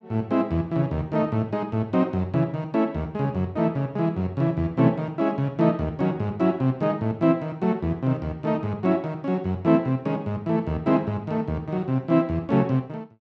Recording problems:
none

